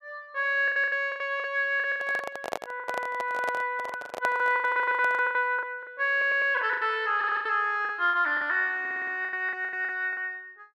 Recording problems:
lost packets; 17% of the sound replaced, filled with the last packet
handling noise; from 2 to 5.5 s; peak -1 dB vs average level
stutter; 4 times, first at 4.5 s

